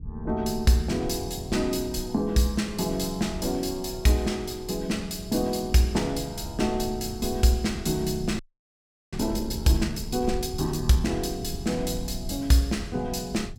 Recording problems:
low-frequency rumble; below 98 Hz, SNR 12 dB
frozen audio; at 8.5 s for 0.5 s

